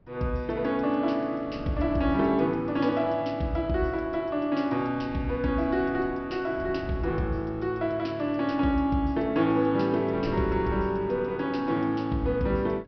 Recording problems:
low-pass filter; nothing above 5.5 kHz
wind on the microphone; below 230 Hz, SNR 18 dB

